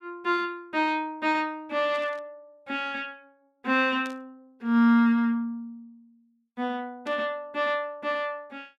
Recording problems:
static burst; at 2 s, at 4 s and at 7 s; peak -13 dB vs average level

